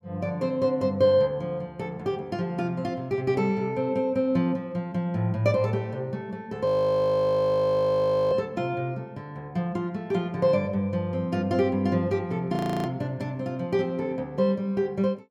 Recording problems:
audio freezing; at 6.5 s for 1.5 s and at 13 s

